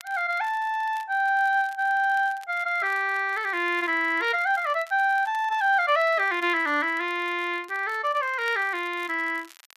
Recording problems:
crackling; vinyl, SNR 27 dB

